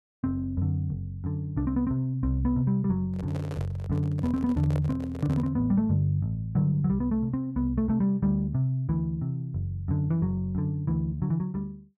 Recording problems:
microphone handling noise; from 3 to 5.5 s; peak -6 dB vs average level

